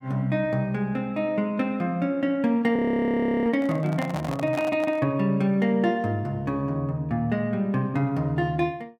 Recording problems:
frozen audio; at 3 s for 0.5 s
handling noise; from 3.5 to 5 s; peak -4 dB vs average level

